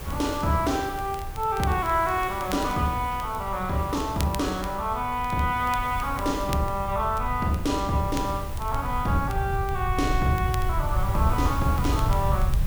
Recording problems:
hiss; slope -5 dB per octave, SNR 15 dB
rumble; below 110 Hz, SNR 6 dB
crackle; vinyl, SNR 18 dB

